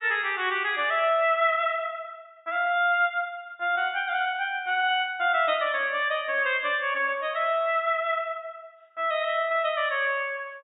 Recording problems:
low-pass filter; nothing above 4 kHz

